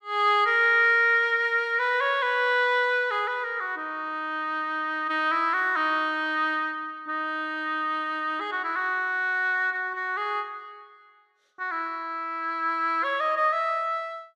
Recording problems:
none

